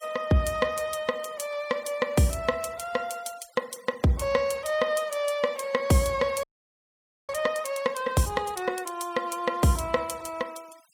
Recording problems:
noise reduction artefacts; signal-to-artefact ratio 23 dB
audio freezing; at 6.5 s for 1 s

